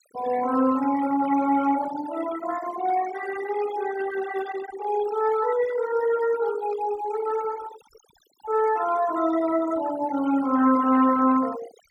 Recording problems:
denoising artefacts; signal-to-artefact ratio 15 dB

